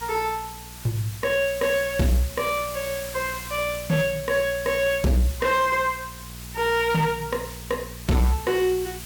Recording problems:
distorted audio; hard clipping, signal-to-distortion ratio 11 dB
hum; 60 Hz, harmonics up to 660 Hz, SNR 18 dB
hiss; slope +1 dB per octave, SNR 13 dB

